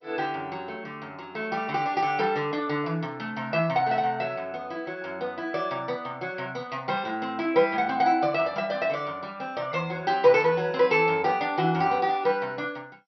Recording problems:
lossy codec; MP2, log-spectral distance 2 dB, nothing above 5.5 kHz

